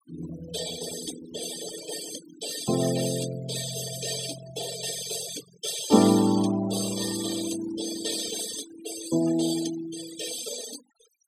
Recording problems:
denoising artefacts; signal-to-artefact ratio 9 dB

